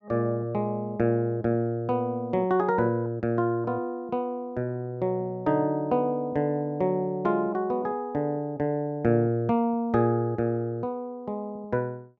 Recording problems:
none

